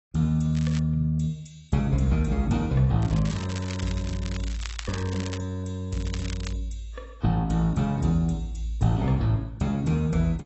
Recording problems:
codec artefacts; AAC, log-spectral distance 3 dB, nothing above 7.6 kHz
crackling; at 0.5 s, from 3 to 5.5 s and at 6 s; loose cable, SNR 15 dB

